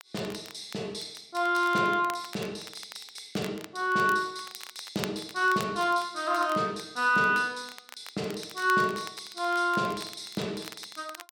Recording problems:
crackle; vinyl, SNR 18 dB

